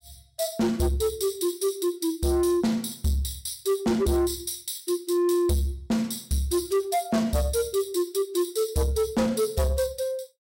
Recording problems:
distorted audio; soft clipping, signal-to-distortion ratio 10 dB

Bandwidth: 16 kHz